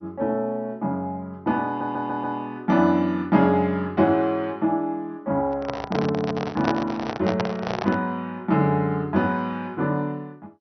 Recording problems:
lossy codec; MP2, log-spectral distance 2 dB
stutter; at 1.5 s
microphone handling noise; from 5.5 to 8 s; peak +3 dB vs average level

